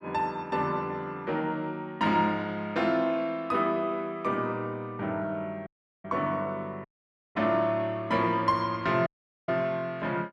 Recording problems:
dropout; at 5.5 s, at 7 s for 0.5 s and at 9 s

